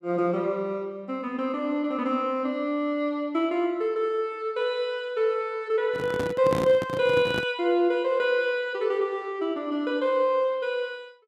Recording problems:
handling noise; from 6 to 7.5 s; peak +1 dB vs average level

